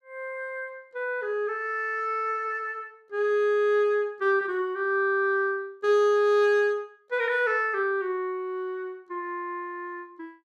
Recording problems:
none

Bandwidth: 14 kHz